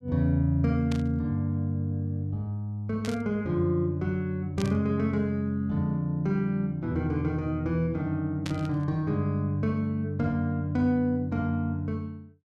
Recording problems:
burst of static; 4 times, first at 1 s; peak -5 dB vs average level

